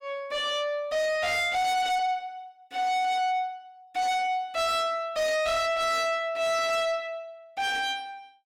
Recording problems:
distorted audio; soft clipping, signal-to-distortion ratio 7 dB

